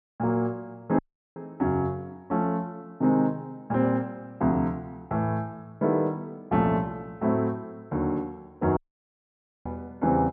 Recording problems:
audio cutting out; at 1 s and at 9 s for 1 s

